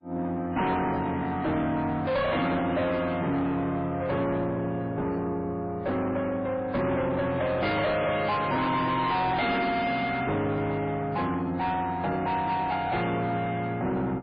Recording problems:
codec artefacts; MP3, log-spectral distance 2 dB, nothing above 4.4 kHz
distorted audio; soft clipping, signal-to-distortion ratio 6 dB

